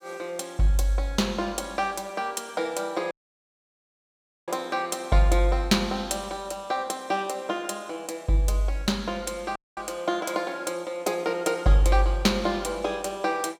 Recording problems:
dropout; at 3 s for 1.5 s and at 9.5 s

